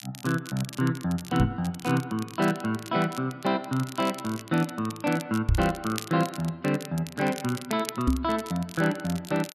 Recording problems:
crackling; vinyl, SNR 15 dB
microphone bump; at 1.5 s, at 5.5 s and at 8 s; peak +7 dB vs average level

